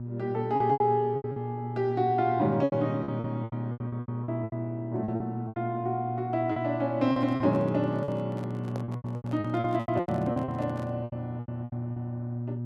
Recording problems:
hum; 60 Hz, harmonics up to 600 Hz, SNR 6 dB
lost packets; 15% of the sound replaced, filled with repeated pitch periods
microphone handling noise; from 7 to 11 s; peak -6 dB vs average level

